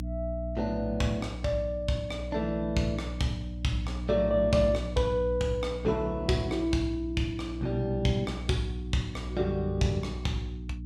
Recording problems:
electrical hum; 60 Hz, harmonics up to 300 Hz, SNR 7 dB

